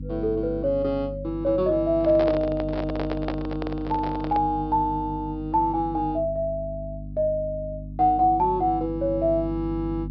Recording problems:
treble missing; nothing above 5.5 kHz
hum; 50 Hz, harmonics up to 300 Hz, SNR 11 dB
handling noise; from 2 to 4.5 s; peak -1 dB vs average level

